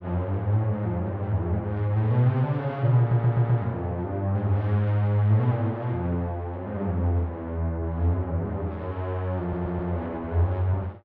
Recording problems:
audio stuttering; at 3 s and at 9.5 s

